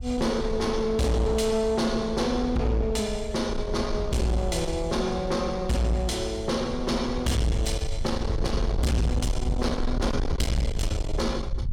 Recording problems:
distortion; soft clipping, signal-to-distortion ratio 8 dB
wind on the microphone; below 86 Hz, SNR 6 dB

